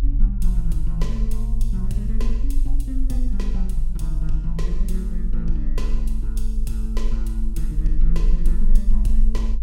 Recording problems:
rumble; below 44 Hz, strongest tone 22 Hz, SNR -7 dB

